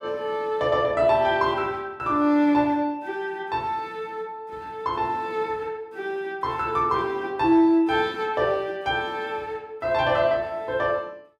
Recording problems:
none

